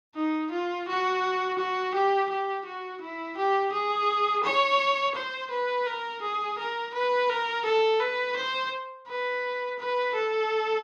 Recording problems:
none

